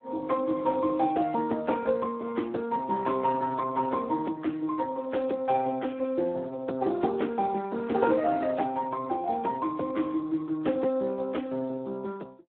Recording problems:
telephone audio; 170 Hz to 3.7 kHz, Speex

